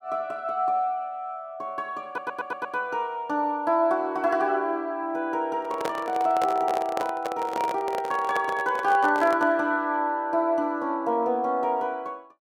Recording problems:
stutter; at 2 s
microphone handling noise; from 5.5 to 9.5 s; peak 0 dB vs average level

